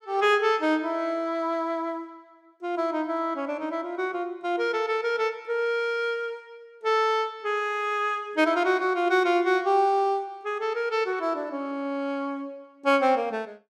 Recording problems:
none

